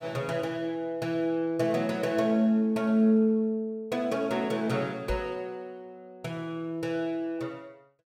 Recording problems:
microphone bump; at 5 s; peak -3 dB vs average level

